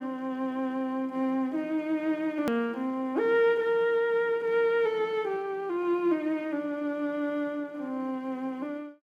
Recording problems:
click at an edit; at 2.5 s

